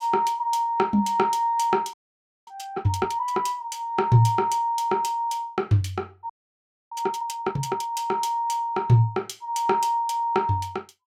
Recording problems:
audio freezing; at 2 s for 0.5 s and at 6.5 s for 0.5 s

